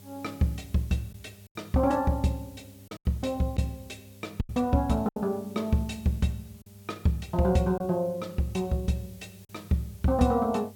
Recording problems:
electrical hum; 50 Hz, harmonics up to 800 Hz, SNR 23 dB
hiss; SNR 26 dB
lost packets; 3% of the sound replaced, filled with silence

